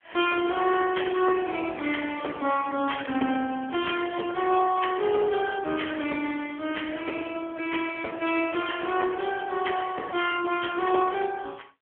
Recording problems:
telephone audio; 220 Hz to 3.4 kHz, AMR-NB

